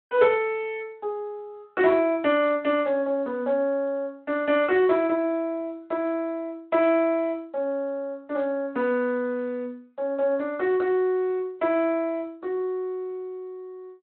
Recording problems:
telephone audio; 260 Hz to 3.6 kHz, Speex

